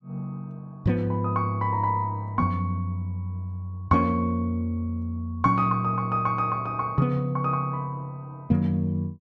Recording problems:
none

